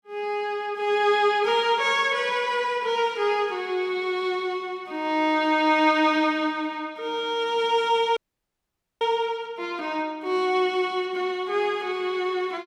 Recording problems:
audio freezing; at 8 s for 1 s

